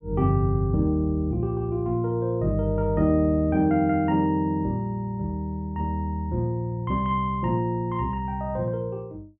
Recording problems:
treble missing; nothing above 3.4 kHz

